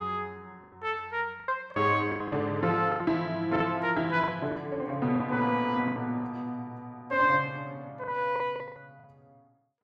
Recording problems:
packet loss; 9% of the sound replaced, filled with the last packet

